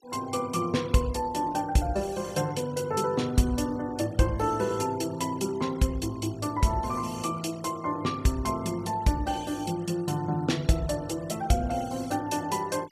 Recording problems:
noise reduction artefacts; signal-to-artefact ratio 21 dB

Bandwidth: 14.5 kHz